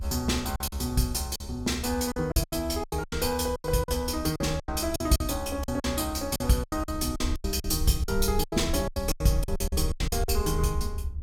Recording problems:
low-frequency rumble; below 76 Hz, SNR 7 dB
packet loss; 16% of the sound replaced, filled with silence

